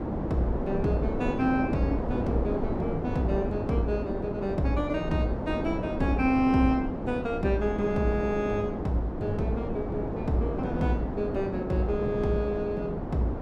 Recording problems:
wind noise; below 500 Hz, SNR 3 dB

